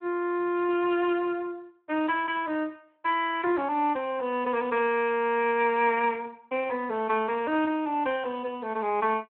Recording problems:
telephone audio; 260 Hz to 3.1 kHz, Speex

